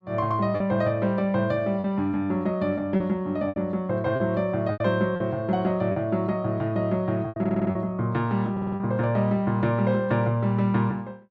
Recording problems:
lost packets; 5% of the sound replaced, filled with repeated pitch periods
audio stuttering; at 7.5 s and at 8.5 s

